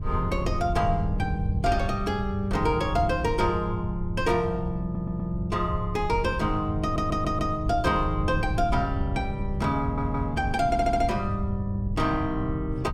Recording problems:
wind noise; below 110 Hz, SNR 6 dB
audio stuttering; 4 times, first at 5 s

